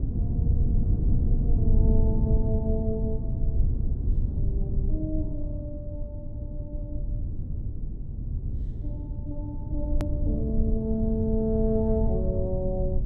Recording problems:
low-frequency rumble; below 100 Hz, SNR -3 dB
edit click; at 10 s

